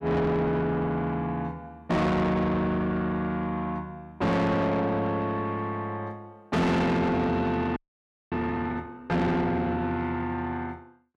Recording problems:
distorted audio; soft clipping, signal-to-distortion ratio 6 dB
audio freezing; at 8 s for 0.5 s

